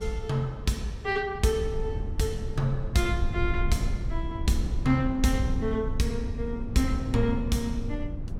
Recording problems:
rumble; below 92 Hz, SNR 5 dB

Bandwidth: 16.5 kHz